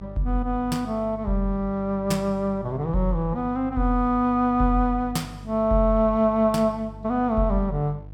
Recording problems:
mains hum; 50 Hz, harmonics up to 600 Hz, SNR 17 dB

